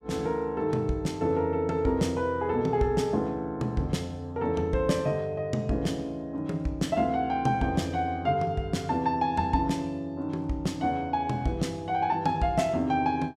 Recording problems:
none

